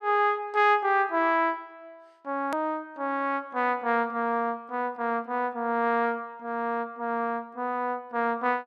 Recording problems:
click at an edit; at 2.5 s

